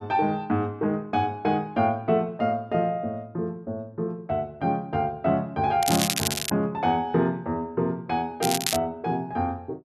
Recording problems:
crackle; at 6 s and at 8.5 s; loose cable, SNR 1 dB

